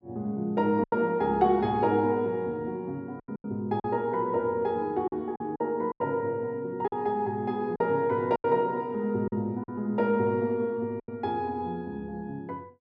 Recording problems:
lost packets; 6% of the sound replaced, filled with silence

